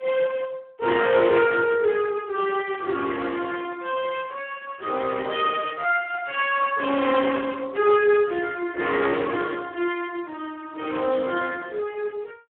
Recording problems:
phone line; 300 Hz to 3.3 kHz, Speex
distorted audio; hard clipping, uneven, signal-to-distortion ratio 13 dB

